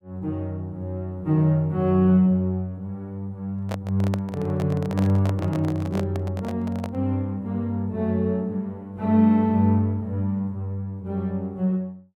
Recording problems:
handling noise; from 3.5 to 7 s; peak -3 dB vs average level

